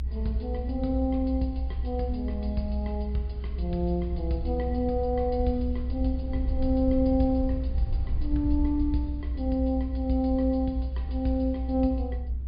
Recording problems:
treble cut off; nothing above 5.1 kHz
hum; 50 Hz, harmonics up to 300 Hz, SNR 18 dB
low-frequency rumble; below 66 Hz, strongest tone 64 Hz, SNR 3 dB

